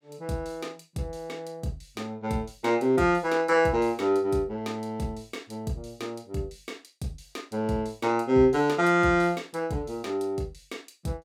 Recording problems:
none

